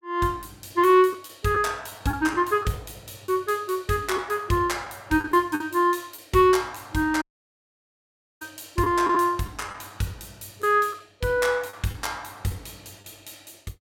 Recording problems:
lost packets; 4% of the sound replaced, filled with the last packet
dropout; at 7 s for 1 s

